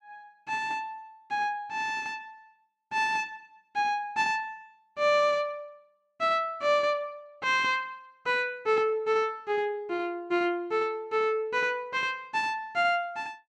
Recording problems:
none

